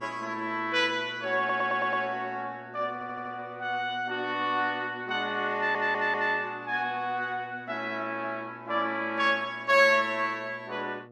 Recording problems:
electrical hum; 60 Hz, harmonics up to 1.3 kHz, SNR 22 dB
audio stuttering; at 1.5 s, at 3 s and at 5.5 s

